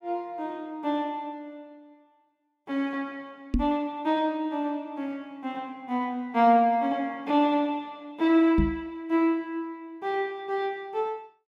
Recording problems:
microphone thump; at 3.5 s and at 8.5 s; peak +5 dB vs average level

